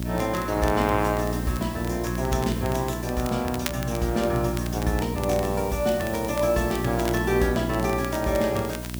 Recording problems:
hum; 60 Hz, harmonics up to 660 Hz, SNR 5 dB
hiss; slope +2 dB per octave, SNR 15 dB
crackle; vinyl, SNR 15 dB

